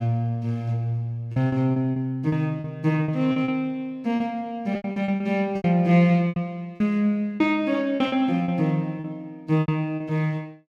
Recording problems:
lost packets; 11% of the sound replaced, filled with repeated pitch periods

